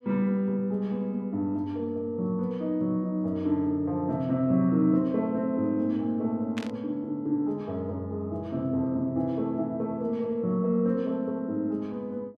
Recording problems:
burst of static; at 6.5 s; peak -5 dB vs average level

